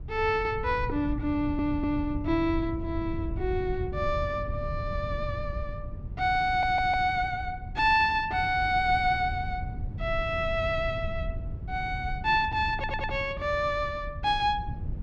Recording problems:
wind noise; below 120 Hz, SNR 9 dB
stutter; at 1.5 s, at 6.5 s and at 13 s

